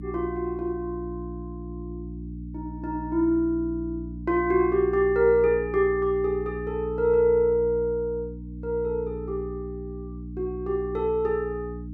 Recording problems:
hum; 60 Hz, harmonics up to 300 Hz, SNR 12 dB

